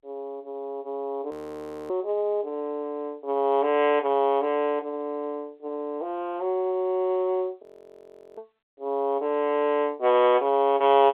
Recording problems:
telephone audio; 320 Hz to 3.5 kHz, G.711
audio freezing; at 1.5 s for 0.5 s and at 7.5 s for 0.5 s

